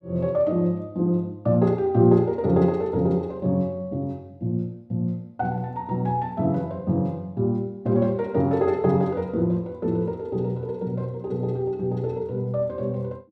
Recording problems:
none

